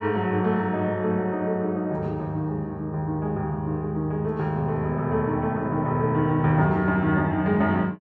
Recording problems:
none

